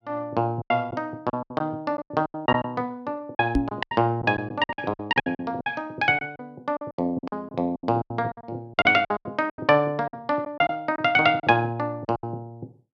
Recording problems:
packet loss; 15% of the sound replaced, filled with silence
knock on the microphone; at 3.5 s; peak +6 dB vs average level

